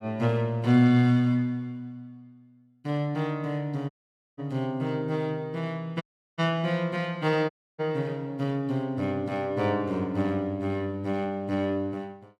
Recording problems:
audio cutting out; at 4 s, at 6 s and at 7.5 s

